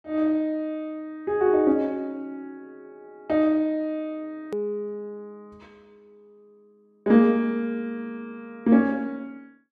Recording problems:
hard cut with a click; at 4.5 s

